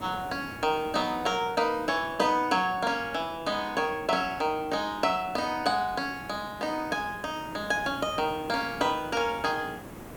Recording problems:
hiss; slope -8 dB per octave, SNR 16 dB

